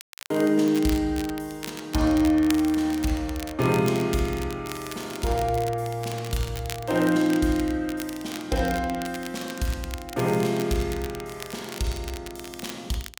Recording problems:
crackle; vinyl, SNR 14 dB

